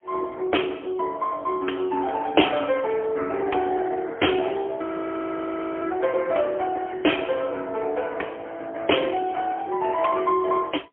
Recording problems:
phone line; 240 Hz to 3.4 kHz, AMR-NB, then MP3
audio freezing; at 5 s for 1 s

